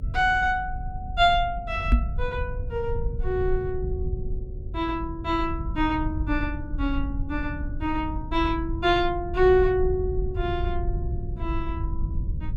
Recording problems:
electrical hum; 50 Hz, harmonics up to 550 Hz, SNR 16 dB
low-frequency rumble; below 80 Hz, SNR 6 dB
microphone thump; at 2 s; peak +9 dB vs average level

